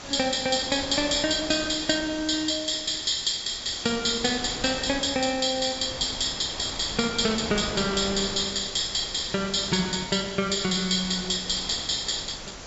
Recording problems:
treble missing; nothing above 8 kHz
hiss; slope +2 dB per octave, SNR 17 dB
wind on the microphone; below 1.9 kHz, SNR 13 dB

